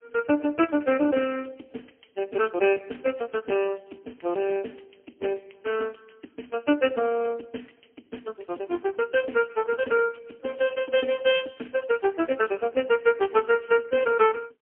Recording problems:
phone line; 260 Hz to 3.2 kHz, AMR-NB, then MP3

